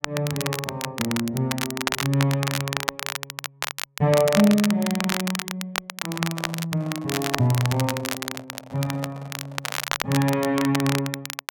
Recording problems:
crackling; vinyl, SNR 5 dB
microphone handling noise; from 6 to 10 s; peak -10 dB vs average level

